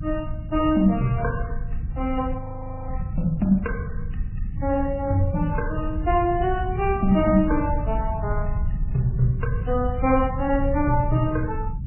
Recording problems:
lossy codec; MP3, then Vorbis, log-spectral distance 3 dB, nothing above 2.8 kHz
low-frequency rumble; below 98 Hz, SNR 6 dB
audio freezing; at 2.5 s

